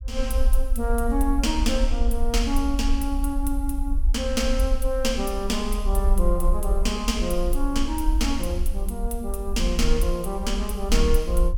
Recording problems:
low-frequency rumble; below 50 Hz, SNR 0 dB

